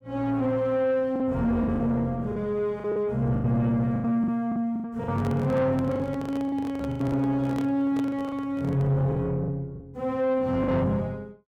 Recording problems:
distorted audio; soft clipping, signal-to-distortion ratio 12 dB
packet loss; 10% of the sound replaced, filled with the last packet
microphone handling noise; from 5 to 9 s; peak -5 dB vs average level

